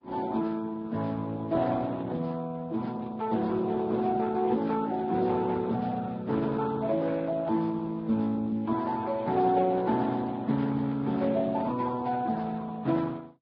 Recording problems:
codec artefacts; Speex, then Vorbis, log-spectral distance 3 dB

